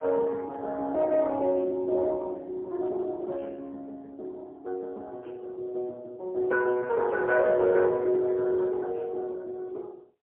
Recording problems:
phone line; 280 Hz to 2.5 kHz, AMR-NB, then MP3

